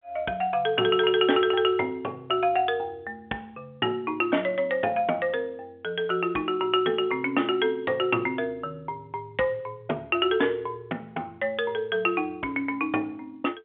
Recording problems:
phone line; 260 Hz to 3.4 kHz, G.711

